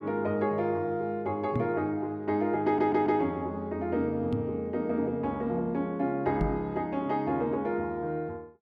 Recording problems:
microphone bump; at 1.5 s, at 4.5 s and at 6.5 s; peak +4 dB vs average level
audio stuttering; at 2.5 s

